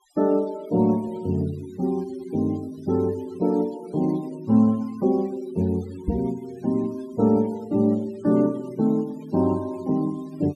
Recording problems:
denoising artefacts; signal-to-artefact ratio 25 dB
microphone bump; at 6 s; peak +3 dB vs average level

